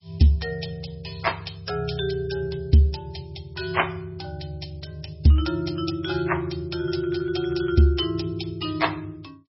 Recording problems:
codec artefacts; MP3, log-spectral distance 5 dB, nothing above 5.5 kHz

